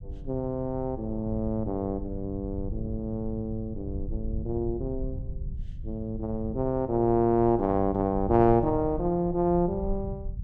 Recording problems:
rumble; below 96 Hz, SNR 11 dB

